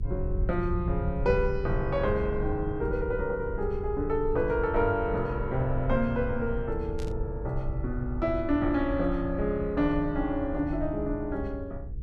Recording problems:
mains hum; 60 Hz, harmonics up to 480 Hz, SNR 20 dB
rumble; below 82 Hz, SNR 7 dB
burst of static; at 7 s; peak -13 dB vs average level

